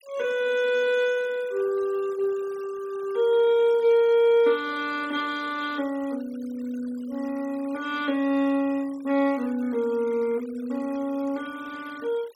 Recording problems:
noise reduction artefacts; signal-to-artefact ratio 23 dB

